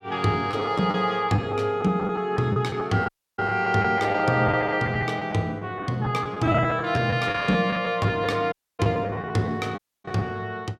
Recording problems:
lost packets; 11% of the sound replaced, filled with the last packet
dropout; at 3 s, at 8.5 s and at 10 s

